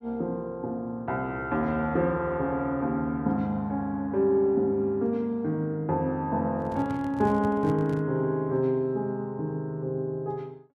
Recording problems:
handling noise; from 6.5 to 8 s; peak -2 dB vs average level

